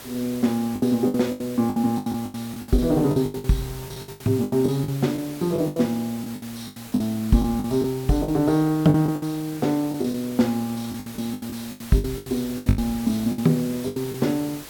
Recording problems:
hiss; slope -2 dB per octave, SNR 16 dB
lost packets; 16% of the sound replaced, filled with the last packet

